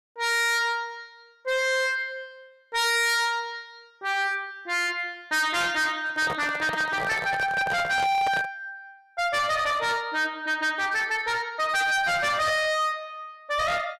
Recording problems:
distorted audio; hard clipping, uneven, signal-to-distortion ratio 6 dB
microphone handling noise; from 6 to 8.5 s; peak -3 dB vs average level

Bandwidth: 13 kHz